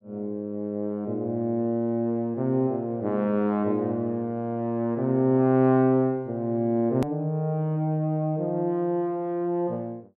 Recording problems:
hard cut with a click; at 7 s

